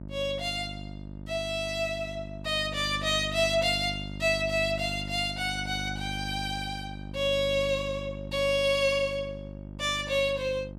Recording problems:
hum; 50 Hz, harmonics up to 900 Hz, SNR 11 dB

